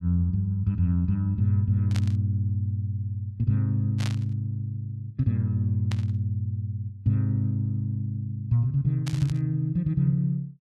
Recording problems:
burst of static; 4 times, first at 2 s; peak -5 dB vs average level

